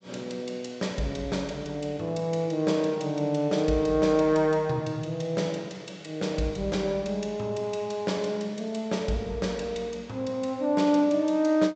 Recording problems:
treble missing; nothing above 8 kHz

